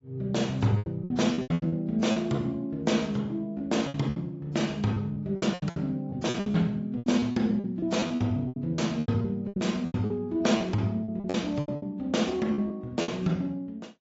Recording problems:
treble cut off; nothing above 7.6 kHz
lossy codec; MP3, then AAC, log-spectral distance 2 dB
packet loss; 15% of the sound replaced, filled with repeated pitch periods

